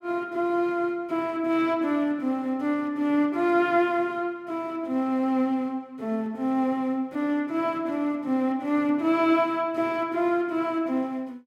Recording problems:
none

